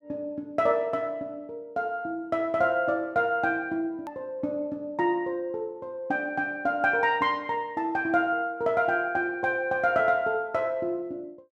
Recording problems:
edit click; at 4 s

